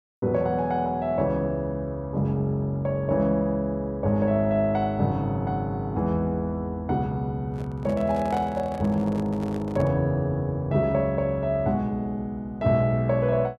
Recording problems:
handling noise; from 7.5 to 10 s; peak -6 dB vs average level

